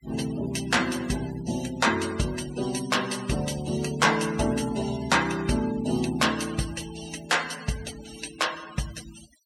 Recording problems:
denoising artefacts; signal-to-artefact ratio 15 dB

